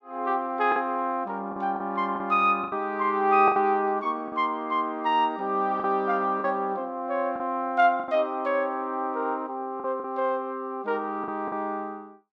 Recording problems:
packet loss; 6% of the sound replaced, filled with the last packet

